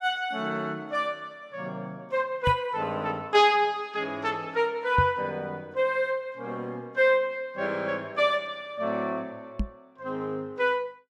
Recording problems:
knock on the microphone; at 2.5 s, at 5 s and at 9.5 s; peak +4 dB vs average level

